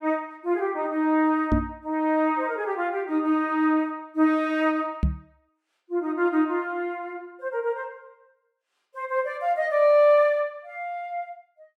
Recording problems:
microphone bump; at 1.5 s and at 5 s; peak +5 dB vs average level

